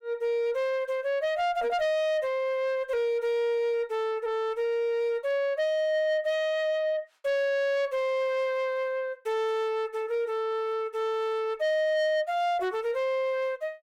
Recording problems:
distorted audio; soft clipping, signal-to-distortion ratio 11 dB

